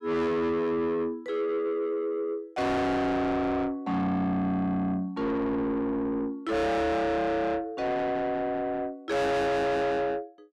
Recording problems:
distorted audio; soft clipping, signal-to-distortion ratio 6 dB

